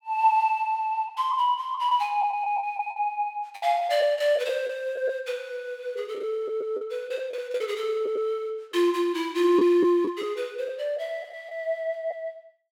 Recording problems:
packet loss; 6% of the sound replaced, filled with the last packet

